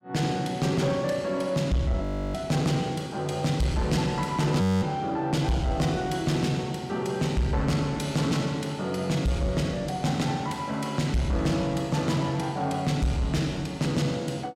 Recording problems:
distorted audio; soft clipping, signal-to-distortion ratio 11 dB
audio freezing; at 2 s and at 4.5 s

